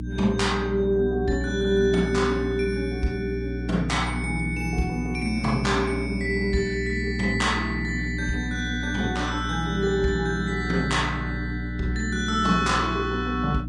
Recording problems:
lossy codec; Vorbis, log-spectral distance 2 dB
hum; 60 Hz, harmonics up to 300 Hz, SNR 6 dB

